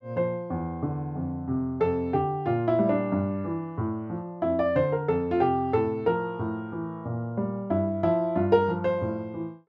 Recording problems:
none

